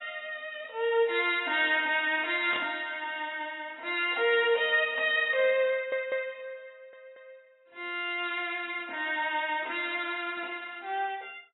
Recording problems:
lossy codec; AAC, log-spectral distance 4 dB, nothing above 3.8 kHz
static burst; at 2.5 s; peak -3 dB vs average level
stutter; at 5.5 s and at 6.5 s

